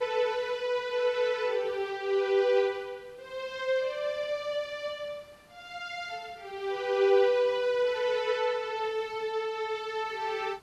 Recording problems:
background hiss; slope -4 dB per octave, SNR 30 dB

